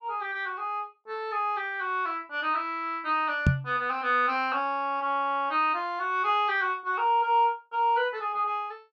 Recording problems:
microphone bump; at 3.5 s; peak +8 dB vs average level

